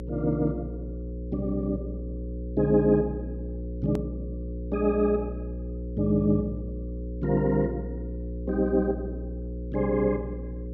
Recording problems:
hum; 60 Hz, harmonics up to 540 Hz, SNR 8 dB
hard cut with a click; at 4 s

